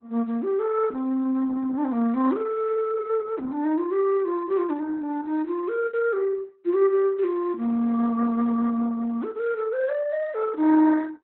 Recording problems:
lossy codec; Opus, log-spectral distance 2 dB, nothing above 4 kHz

